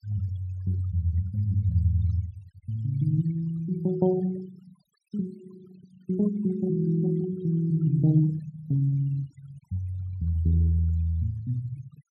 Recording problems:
denoising artefacts; signal-to-artefact ratio 23 dB

